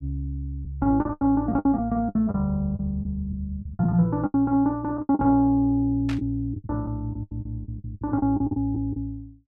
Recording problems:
lost packets; 13% of the sound replaced, filled with the last packet
burst of static; at 6 s; peak -8 dB vs average level

